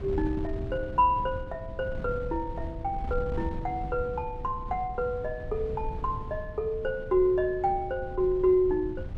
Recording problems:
wind on the microphone; below 130 Hz, SNR 10 dB

